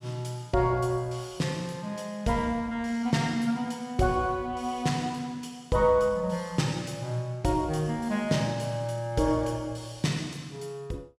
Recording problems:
none

